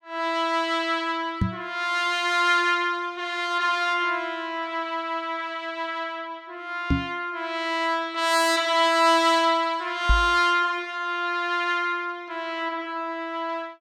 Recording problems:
knock on the microphone; at 1.5 s, at 7 s and at 10 s; peak +5 dB vs average level

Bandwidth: 17 kHz